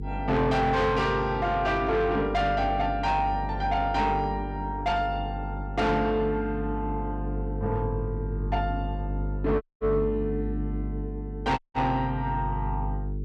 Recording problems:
distortion; soft clipping, signal-to-distortion ratio 8 dB
hum; 50 Hz, harmonics up to 450 Hz, SNR 7 dB
dropout; at 9.5 s and at 12 s

